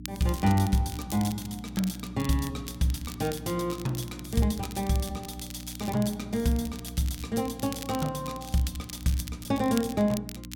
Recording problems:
hum; 60 Hz, harmonics up to 300 Hz, SNR 13 dB
crackle; vinyl, SNR 14 dB

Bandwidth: 17 kHz